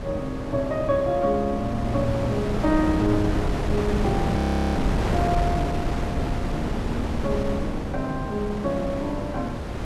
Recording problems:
wind noise; below 450 Hz, SNR 1 dB
frozen audio; at 4.5 s

